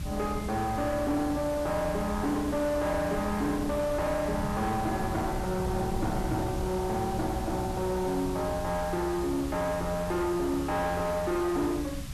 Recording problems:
distorted audio; soft clipping, signal-to-distortion ratio 10 dB
hiss; slope 0 dB per octave, SNR 16 dB
low-frequency rumble; below 160 Hz, SNR 8 dB

